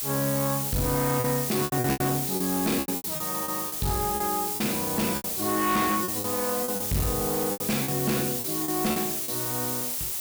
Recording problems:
distortion; hard clipping, uneven, signal-to-distortion ratio 9 dB
hiss; SNR 0 dB
packet loss; 12% of the sound replaced, filled with repeated pitch periods

